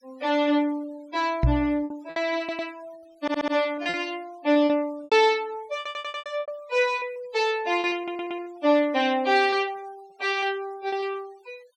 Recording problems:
denoising artefacts; signal-to-artefact ratio 27 dB
lost packets; 8% of the sound replaced, filled with repeated pitch periods
knock on the microphone; at 1.5 s; peak +7 dB vs average level
stutter; 4 times, first at 2.5 s

